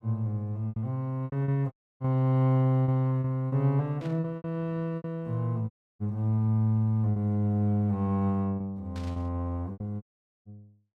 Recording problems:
packet loss; 7% of the sound replaced, filled with repeated pitch periods
audio cutting out; at 1.5 s, at 5.5 s and at 10 s
static burst; at 4 s and at 9 s; peak -15 dB vs average level

